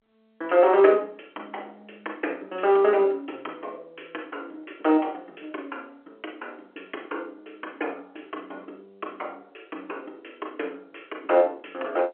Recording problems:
telephone audio; 260 Hz to 3.3 kHz, G.711

